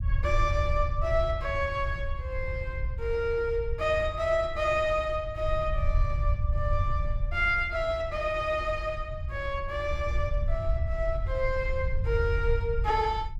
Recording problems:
rumble; below 80 Hz, SNR 3 dB

